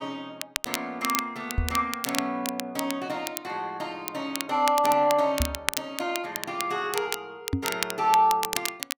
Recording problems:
crackle; vinyl, SNR 6 dB
knock on the microphone; at 1.5 s, at 5.5 s and at 7.5 s; peak +5 dB vs average level

